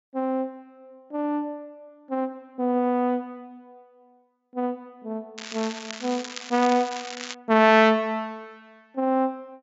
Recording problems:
low-pass filter; nothing above 7.5 kHz
crackling; from 5.5 to 7.5 s; loose cable, SNR 12 dB

